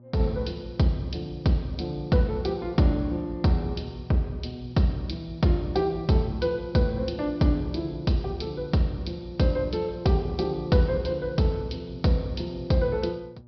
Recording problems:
treble cut off; nothing above 5.5 kHz
hum; 60 Hz, harmonics up to 840 Hz, SNR 24 dB

